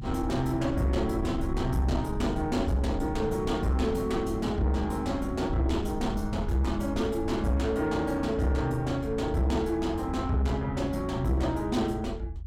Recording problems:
distorted audio; soft clipping, signal-to-distortion ratio 11 dB
low-frequency rumble; below 84 Hz, SNR 9 dB

